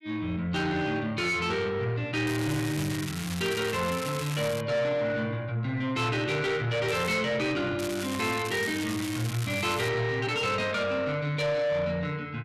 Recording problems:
distorted audio; soft clipping, signal-to-distortion ratio 11 dB
crackle; from 2.5 to 4.5 s, at 7 s and from 8 to 10 s; loose cable, SNR 9 dB

